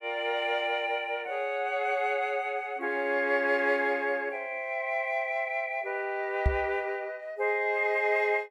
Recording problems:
knock on the microphone; at 6.5 s; peak +6 dB vs average level

